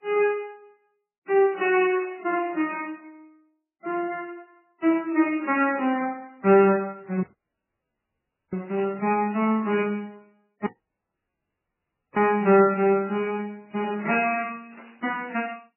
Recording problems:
lossy codec; MP3, then MP3, log-spectral distance 3 dB, nothing above 2.6 kHz
burst of static; 5 times, first at 2 s; peak -12 dB vs average level
dropout; at 7 s for 1.5 s and at 11 s for 1.5 s

